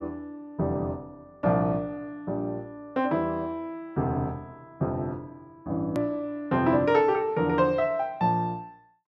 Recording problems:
click at an edit; at 6 s

